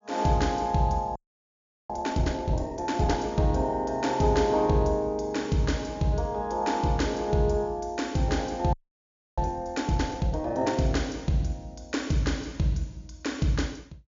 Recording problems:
low-pass filter; nothing above 7.2 kHz
frozen audio; at 1 s for 0.5 s and at 8.5 s for 0.5 s

